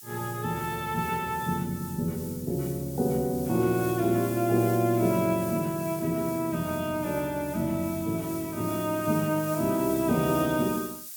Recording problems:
hiss; slope +7 dB per octave, SNR 13 dB

